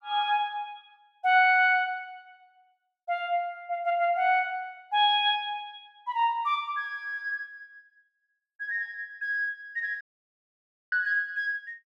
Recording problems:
audio cutting out; at 10 s for 1 s

